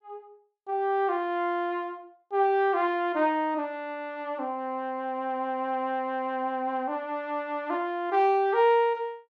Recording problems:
none

